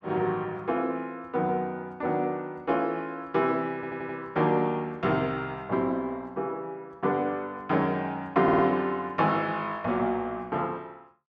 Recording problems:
stutter; at 3.5 s and at 8.5 s

